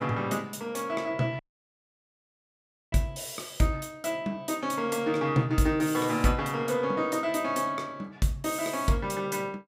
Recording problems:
dropout; at 1.5 s for 1.5 s

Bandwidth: 15.5 kHz